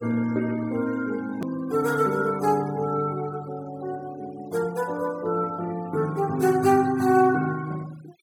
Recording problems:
denoising artefacts; signal-to-artefact ratio 20 dB
edit click; at 1.5 s

